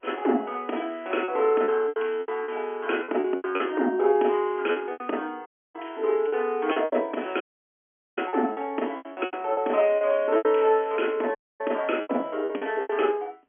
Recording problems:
telephone audio; 240 Hz to 3.3 kHz, G.711
lost packets; 12% of the sound replaced, filled with repeated pitch periods
audio cutting out; at 5.5 s, at 7.5 s for 1 s and at 11 s

